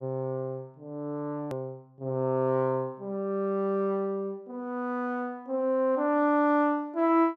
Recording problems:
click at an edit; at 1.5 s

